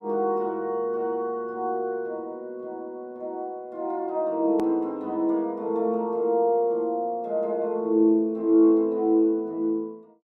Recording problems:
hard cut with a click; at 4.5 s

